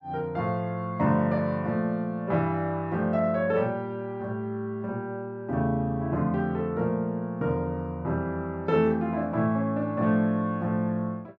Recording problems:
none

